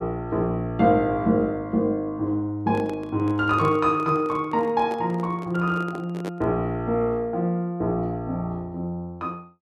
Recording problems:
microphone handling noise; from 2.5 to 6.5 s; peak -5 dB vs average level

